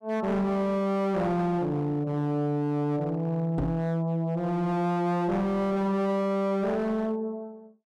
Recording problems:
distorted audio; hard clipping, signal-to-distortion ratio 7 dB
knock on the microphone; at 3.5 s; peak +1 dB vs average level

